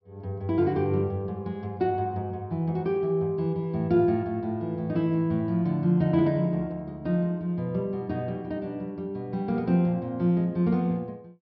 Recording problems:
low-pass filter; nothing above 5.6 kHz

